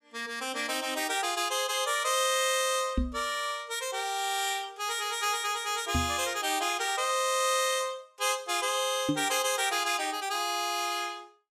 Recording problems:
microphone bump; at 3 s, at 6 s and at 9 s; peak +4 dB vs average level

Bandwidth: 15 kHz